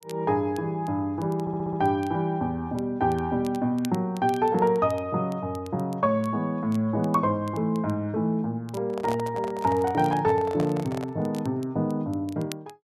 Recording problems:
crackle; vinyl, SNR 25 dB
audio stuttering; at 1.5 s
handling noise; from 9 to 11 s; peak -3 dB vs average level

